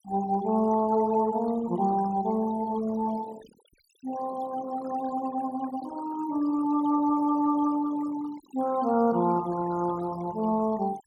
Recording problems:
noise reduction artefacts; signal-to-artefact ratio 18 dB

